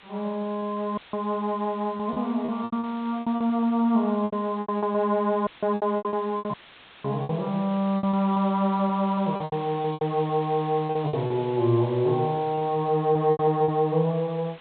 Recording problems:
treble cut off; nothing above 4 kHz
hiss; SNR 22 dB
packet loss; 12% of the sound replaced, filled with repeated pitch periods
audio cutting out; at 1 s, at 5.5 s and at 6.5 s for 0.5 s; filled with static

